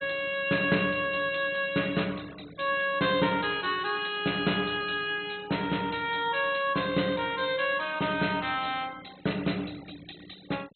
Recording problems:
treble cut off; nothing above 4.1 kHz
denoising artefacts; signal-to-artefact ratio 21 dB

